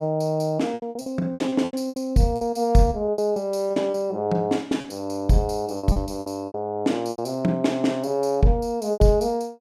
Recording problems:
lost packets; 12% of the sound replaced, filled with repeated pitch periods

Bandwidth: 15 kHz